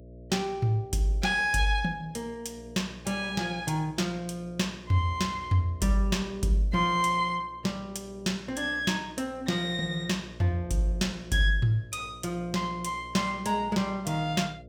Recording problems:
electrical hum; 60 Hz, harmonics up to 660 Hz, SNR 20 dB

